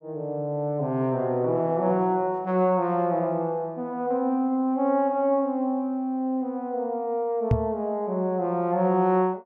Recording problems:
microphone bump; at 7.5 s; peak +6 dB vs average level

